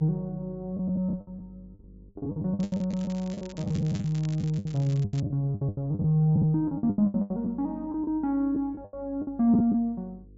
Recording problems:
treble cut off; nothing above 8 kHz
hum; 50 Hz, harmonics up to 500 Hz, SNR 24 dB
packet loss; 17% of the sound replaced, filled with the last packet
crackle; from 2.5 to 5 s; loose cable, SNR 22 dB

